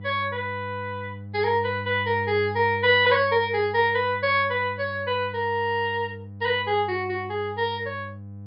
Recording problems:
treble missing; nothing above 5.5 kHz
electrical hum; 50 Hz, harmonics up to 500 Hz, SNR 14 dB

